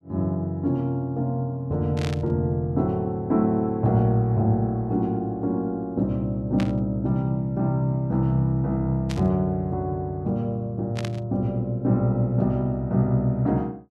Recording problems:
burst of static; 4 times, first at 2 s; peak -6 dB vs average level

